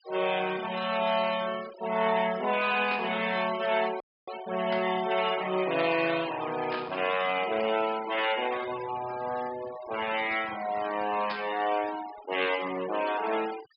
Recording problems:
low-pass filter; nothing above 5.5 kHz
noise reduction artefacts; signal-to-artefact ratio 13 dB
burst of static; 4 times, first at 3 s; peak -5 dB vs average level
audio cutting out; at 4 s

